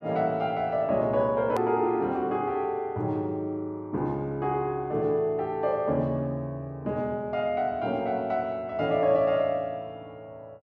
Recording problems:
edit click; at 1.5 s

